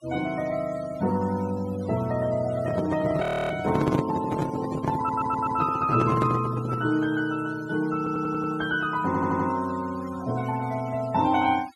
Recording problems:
noise reduction artefacts; signal-to-artefact ratio 17 dB
microphone handling noise; from 2.5 to 7 s; peak +4 dB vs average level
frozen audio; at 3 s
audio stuttering; at 5 s, at 8 s and at 9 s

